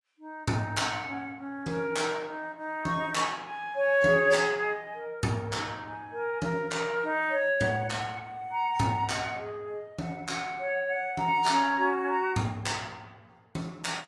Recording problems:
lossy codec; AAC, log-spectral distance 2 dB

